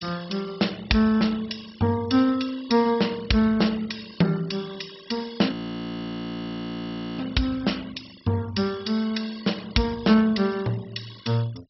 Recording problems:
treble missing; nothing above 5.7 kHz
denoising artefacts; signal-to-artefact ratio 21 dB
frozen audio; at 5.5 s for 1.5 s

